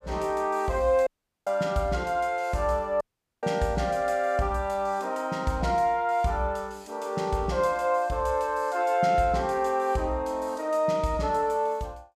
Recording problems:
dropout; at 1 s and at 3 s

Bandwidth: 15 kHz